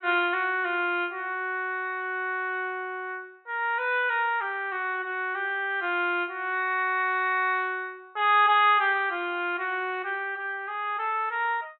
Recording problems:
treble cut off; nothing above 3.9 kHz

